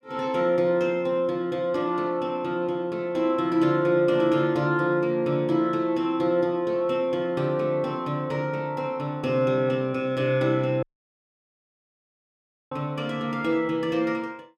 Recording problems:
audio cutting out; at 11 s for 2 s

